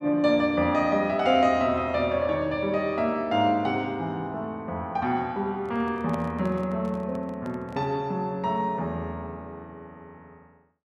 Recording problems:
microphone handling noise; from 5.5 to 8 s; peak -7 dB vs average level

